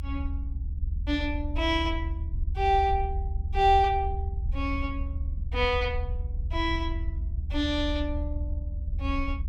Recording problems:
low-frequency rumble; below 74 Hz, SNR 4 dB

